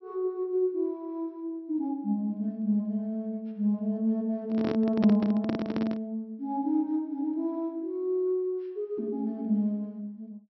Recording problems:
low-pass filter; nothing above 5.7 kHz
microphone handling noise; from 4.5 to 6 s; peak +2 dB vs average level

